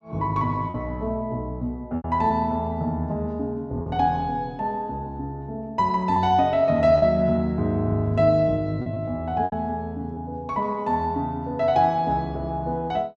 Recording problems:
packet loss; 3% of the sound replaced, filled with repeated pitch periods

